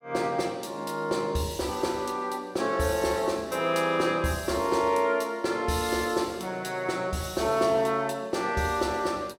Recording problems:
none

